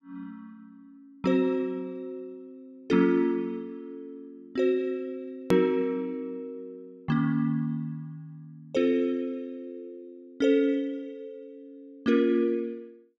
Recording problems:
edit click; at 5.5 s

